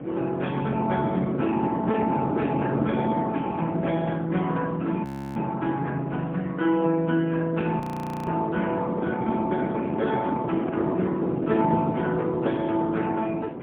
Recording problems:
telephone audio; 190 Hz to 3.3 kHz, AMR-NB, then MP3
wind on the microphone; below 450 Hz, SNR 5 dB
frozen audio; at 5 s and at 8 s

